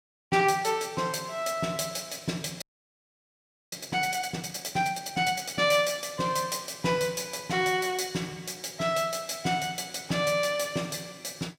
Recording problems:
frozen audio; at 2.5 s for 1 s

